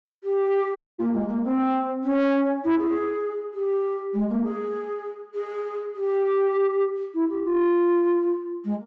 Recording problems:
low-pass filter; nothing above 8 kHz
distorted audio; soft clipping, signal-to-distortion ratio 10 dB
dropout; at 1 s

